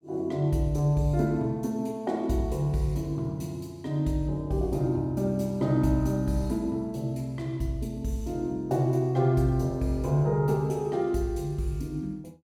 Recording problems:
none

